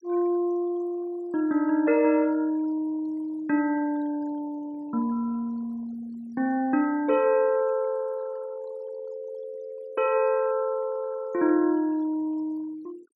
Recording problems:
noise reduction artefacts; signal-to-artefact ratio 25 dB

